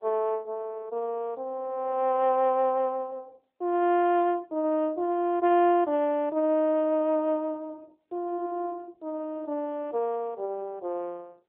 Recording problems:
telephone audio; 320 Hz to 3.8 kHz, AMR-NB

